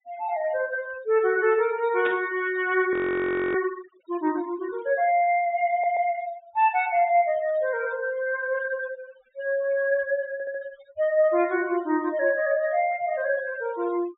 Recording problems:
treble missing; nothing above 4 kHz
noise reduction artefacts; signal-to-artefact ratio 20 dB
static burst; at 2 s; peak -6 dB vs average level
frozen audio; at 3 s for 0.5 s
stutter; at 5.5 s and at 10 s

